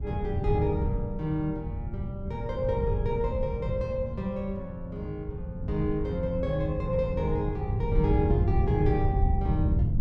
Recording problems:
wind noise; below 120 Hz, SNR 0 dB

